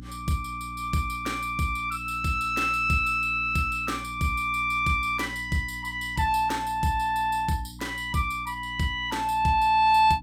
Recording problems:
electrical hum; 60 Hz, harmonics up to 300 Hz, SNR 17 dB

